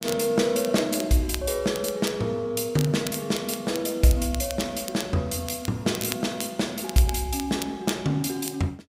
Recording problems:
crackling; vinyl, SNR 12 dB

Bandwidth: 15.5 kHz